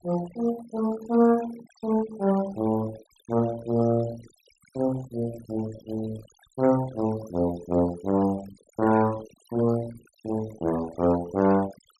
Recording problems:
noise reduction artefacts; signal-to-artefact ratio 18 dB

